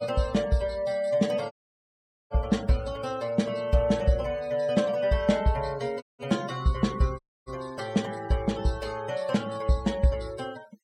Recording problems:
noise reduction artefacts; signal-to-artefact ratio 20 dB
audio cutting out; at 1.5 s for 1 s, at 6 s and at 7 s

